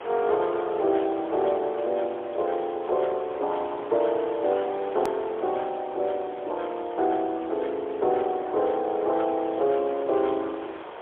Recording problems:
phone line; 300 Hz to 3.4 kHz, AMR-NB, then MP3
hiss; SNR 14 dB
edit click; at 5 s

